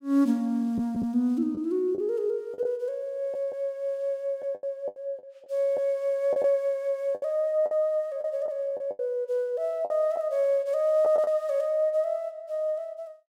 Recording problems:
lost packets; 7% of the sound replaced, filled with the last packet

